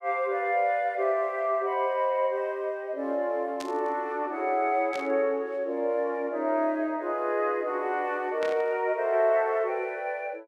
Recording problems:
static burst; at 3.5 s, at 5 s and at 8.5 s; peak -7 dB vs average level

